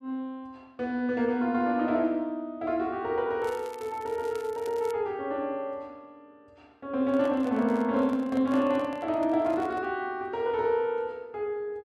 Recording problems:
crackling; from 3.5 to 5 s; loose cable, SNR 23 dB
handling noise; from 7 to 10 s; peak -8 dB vs average level

